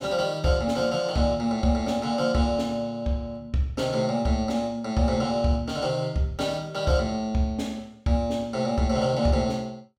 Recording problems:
none

